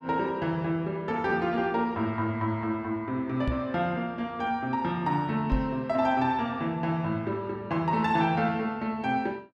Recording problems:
knock on the microphone; at 3.5 s and at 5.5 s; peak +3 dB vs average level

